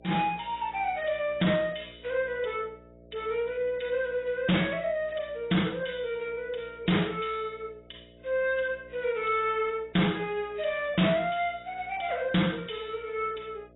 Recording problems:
codec artefacts; AAC, log-spectral distance 5 dB, nothing above 3.8 kHz
distortion; soft clipping, signal-to-distortion ratio 10 dB
electrical hum; 60 Hz, harmonics up to 660 Hz, SNR 25 dB

